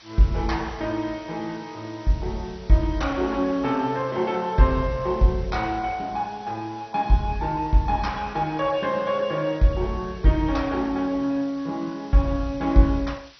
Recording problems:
lossy compression; MP2, log-spectral distance 4 dB, nothing above 6 kHz
background hiss; slope +2 dB per octave, SNR 24 dB

